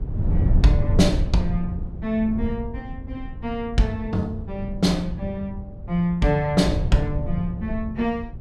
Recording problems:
wind noise; below 110 Hz, SNR 4 dB

